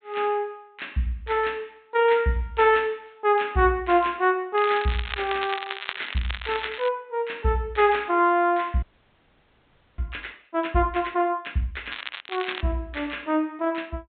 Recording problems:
low-pass filter; nothing above 4 kHz
crackling; from 4.5 to 7 s and at 12 s; loose cable, SNR 9 dB
audio freezing; at 9 s for 1 s

